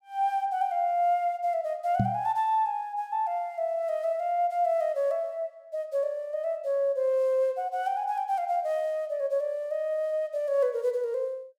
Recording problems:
microphone thump; at 2 s; peak +5 dB vs average level

